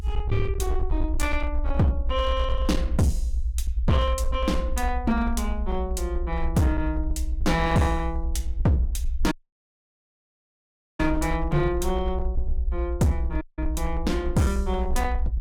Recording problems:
distortion; hard clipping, signal-to-distortion ratio 11 dB
rumble; below 64 Hz, SNR 3 dB
audio cutting out; at 9.5 s for 1.5 s and at 13 s

